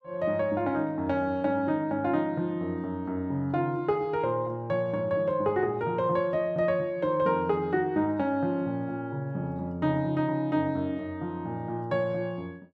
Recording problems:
none

